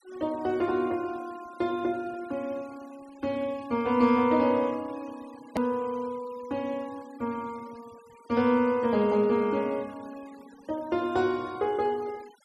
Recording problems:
denoising artefacts; signal-to-artefact ratio 24 dB
hard cut with a click; at 5.5 s

